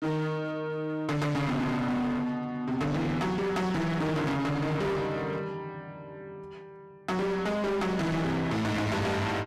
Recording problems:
distorted audio; hard clipping, signal-to-distortion ratio 5 dB

